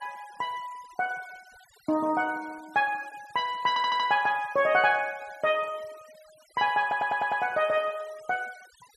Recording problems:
denoising artefacts; signal-to-artefact ratio 24 dB
stutter; at 3.5 s and at 7 s

